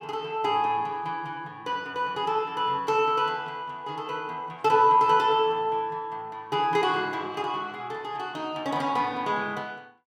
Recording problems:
none

